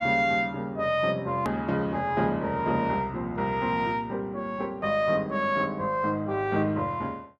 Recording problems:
hard cut with a click; at 1.5 s

